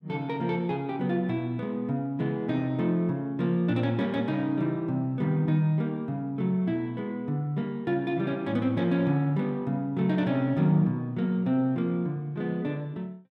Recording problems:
none

